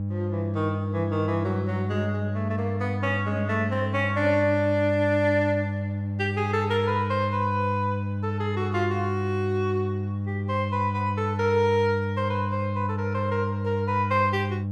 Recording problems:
electrical hum; 50 Hz, harmonics up to 500 Hz, SNR 3 dB

